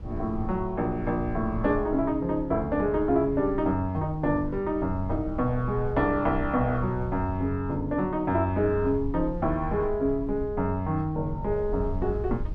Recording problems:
low-frequency rumble; below 84 Hz, SNR 12 dB

